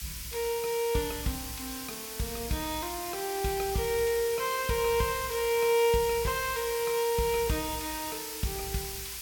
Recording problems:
background hiss; SNR 7 dB
crackling; from 4.5 to 6 s; loose cable, SNR 25 dB

